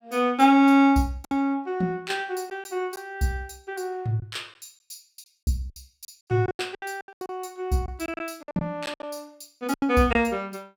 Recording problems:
lost packets; 10% of the sound replaced, filled with silence

